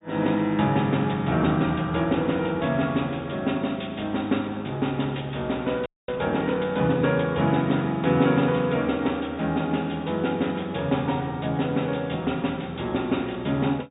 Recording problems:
treble missing; nothing above 4 kHz
audio freezing; at 6 s

